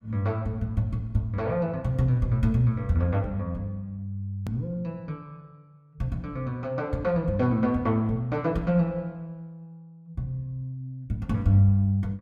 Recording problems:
hard cut with a click; at 4.5 s

